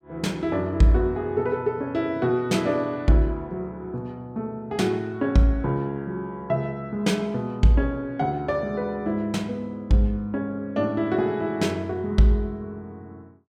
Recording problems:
none

